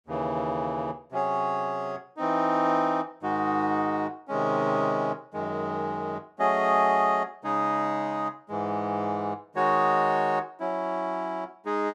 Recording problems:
none

